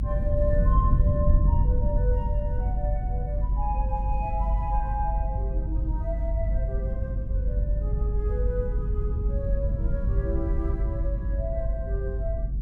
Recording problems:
low-frequency rumble; below 78 Hz, strongest tone 48 Hz, SNR -7 dB

